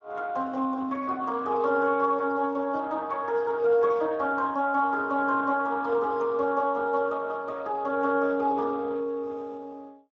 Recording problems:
lossy compression; Speex, log-spectral distance 3 dB

